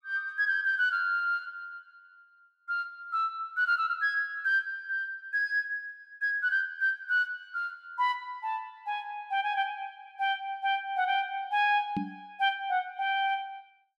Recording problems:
knock on the microphone; at 12 s; peak +1 dB vs average level

